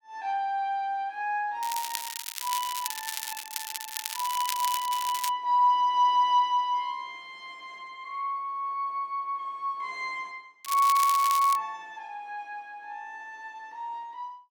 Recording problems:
crackle; from 1.5 to 5.5 s and at 11 s; loose cable, SNR 7 dB

